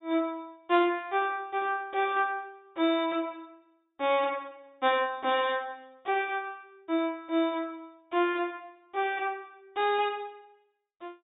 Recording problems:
treble cut off; nothing above 4 kHz

